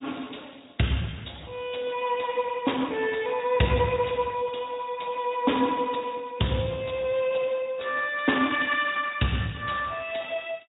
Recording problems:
low-pass filter; nothing above 3.8 kHz
lossy compression; Speex, log-spectral distance 6 dB

